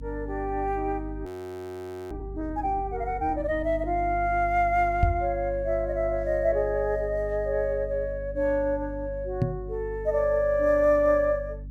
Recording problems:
electrical hum; 50 Hz, harmonics up to 300 Hz, SNR 12 dB
audio freezing; at 1.5 s for 1 s
microphone bump; at 5 s and at 9.5 s; peak +6 dB vs average level

